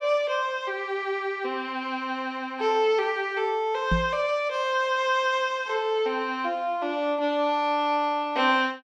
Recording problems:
microphone bump; at 4 s; peak +4 dB vs average level

